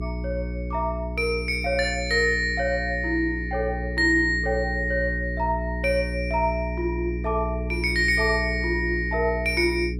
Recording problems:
electrical hum; 60 Hz, harmonics up to 420 Hz, SNR 7 dB

